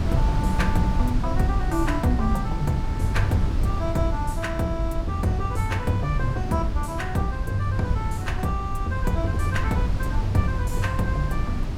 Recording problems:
wind on the microphone; below 120 Hz, SNR 1 dB

